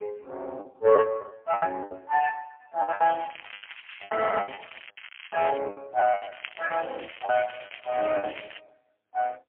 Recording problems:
telephone audio; 320 Hz to 2.5 kHz, AMR-NB, then MP3
lost packets; 16% of the sound replaced, filled with the last packet
crackling; from 3 to 5.5 s and from 6 to 8.5 s; loose cable, SNR 16 dB

